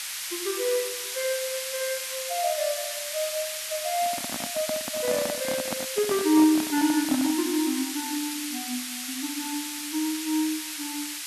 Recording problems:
background hiss; SNR 3 dB
microphone handling noise; from 4 to 7.5 s; peak 0 dB vs average level

